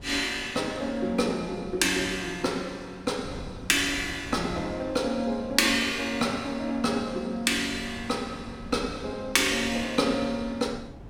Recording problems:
wind noise; below 290 Hz, SNR 17 dB

